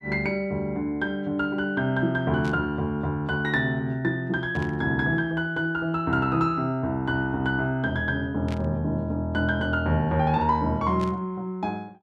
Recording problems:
static burst; 4 times, first at 2.5 s; peak -10 dB vs average level

